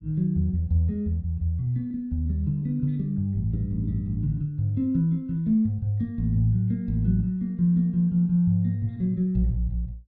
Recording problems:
none

